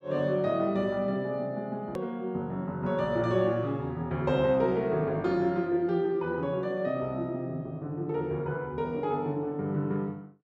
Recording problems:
hard cut with a click; at 2 s

